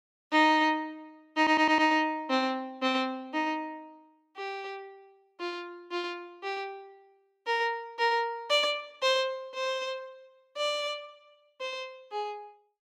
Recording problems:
stutter; at 1.5 s

